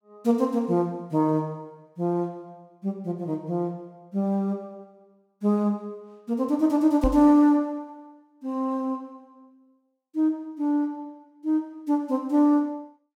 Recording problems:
microphone thump; at 7 s; peak 0 dB vs average level

